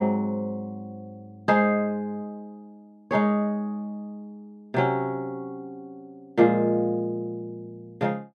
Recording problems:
none

